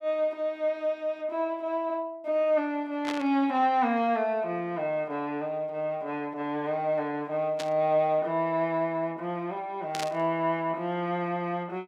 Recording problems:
static burst; at 3 s, at 7.5 s and at 10 s; peak -2 dB vs average level

